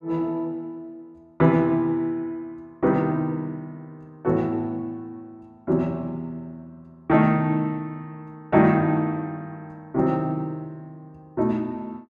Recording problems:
none

